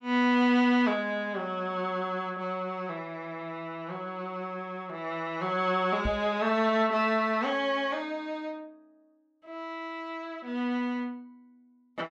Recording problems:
knock on the microphone; at 6 s; peak +1 dB vs average level

